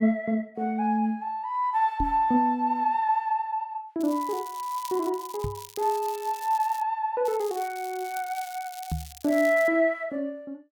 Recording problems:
microphone thump; at 2 s, at 5.5 s and at 9 s; peak 0 dB vs average level
crackle; from 4 to 7 s and from 7.5 to 9.5 s; loose cable, SNR 18 dB

